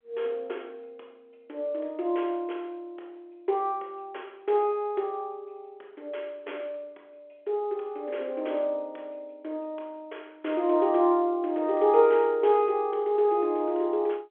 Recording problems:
phone line; 320 Hz to 3.8 kHz, G.711

